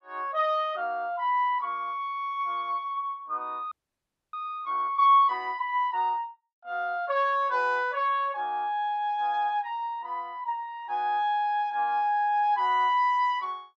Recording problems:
frozen audio; at 3.5 s for 0.5 s

